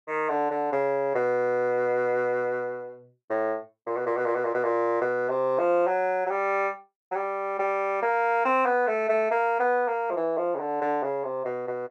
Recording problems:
none

